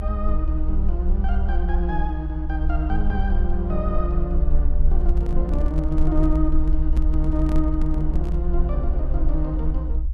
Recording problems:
low-frequency rumble; below 60 Hz, strongest tone 20 Hz, SNR -4 dB
microphone handling noise; from 5 to 8.5 s; peak -2 dB vs average level

